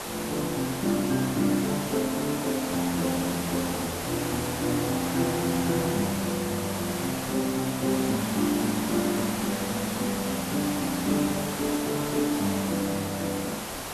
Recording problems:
hiss; slope -4 dB per octave, SNR 4 dB

